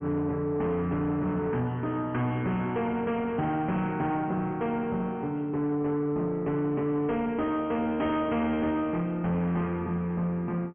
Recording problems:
low-pass filter; nothing above 3.3 kHz
distortion; soft clipping, signal-to-distortion ratio 10 dB

